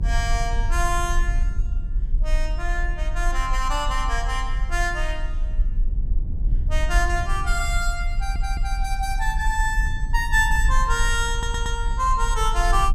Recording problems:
low-frequency rumble; below 44 Hz, strongest tone 26 Hz, SNR 1 dB
audio stuttering; at 8 s and at 11 s

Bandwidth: 15.5 kHz